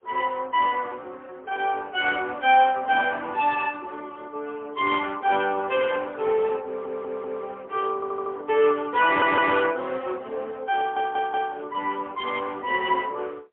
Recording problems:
phone line; 340 Hz to 3.4 kHz, AMR-NB, then MP3
stutter; 4 times, first at 6.5 s

